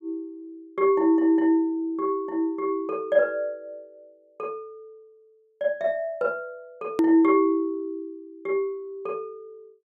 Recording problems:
hard cut with a click; at 7 s

